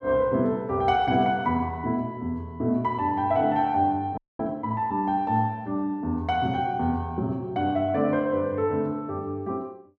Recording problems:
audio freezing; at 4 s

